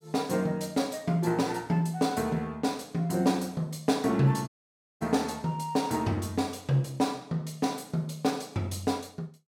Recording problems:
audio cutting out; at 4.5 s for 0.5 s

